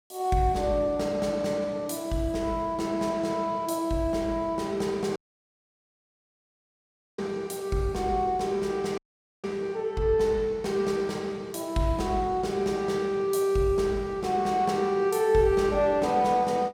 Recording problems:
audio cutting out; at 5 s for 2 s and at 9 s

